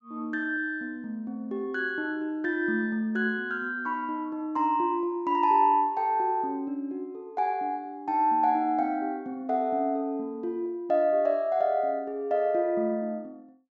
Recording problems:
treble cut off; nothing above 7.5 kHz

